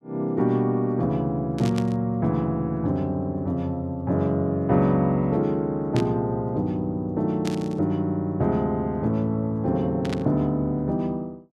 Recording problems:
static burst; 4 times, first at 1.5 s; peak -6 dB vs average level

